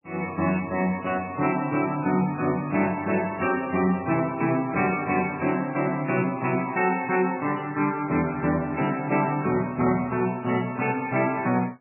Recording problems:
lossy compression; MP3, log-spectral distance 5 dB, nothing above 2.4 kHz
crackle; from 2 to 6.5 s and from 6.5 to 8.5 s; loose cable, SNR 30 dB

